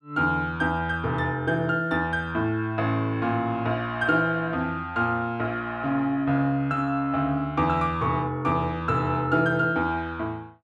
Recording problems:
none

